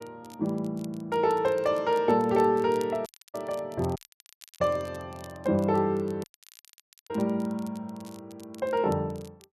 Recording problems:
crackling; vinyl, SNR 25 dB
dropout; at 3 s, at 4 s for 0.5 s and at 6 s for 1 s
microphone thump; at 4.5 s; peak -8 dB vs average level

